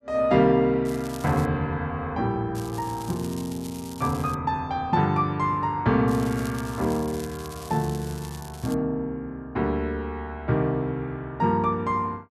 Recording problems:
crackling; at 1 s, from 2.5 to 4.5 s and from 6 to 8.5 s; loose cable, SNR 18 dB

